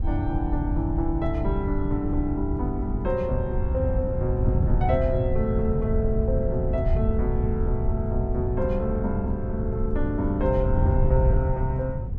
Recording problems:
wind on the microphone; below 110 Hz, SNR -1 dB

